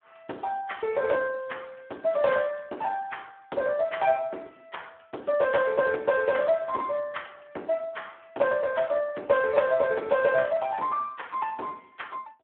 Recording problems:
phone line; 280 Hz to 2.6 kHz, Speex

